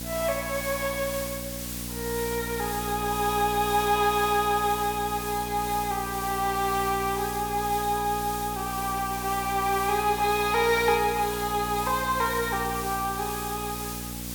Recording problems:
hum; 60 Hz, harmonics up to 1.1 kHz, SNR 11 dB
hiss; slope +3 dB per octave, SNR 9 dB

